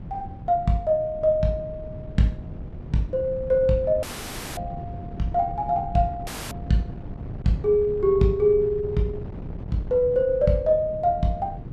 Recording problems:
wind on the microphone; below 180 Hz, SNR 13 dB
dropout; at 4 s for 0.5 s and at 6.5 s

